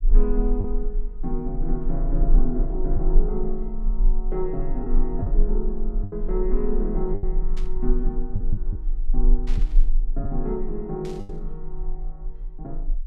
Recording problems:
rumble; below 32 Hz, strongest tone 22 Hz, SNR -3 dB
packet loss; 4% of the sound replaced, filled with the last packet
burst of static; at 7.5 s, at 9.5 s and at 11 s; peak -9 dB vs average level

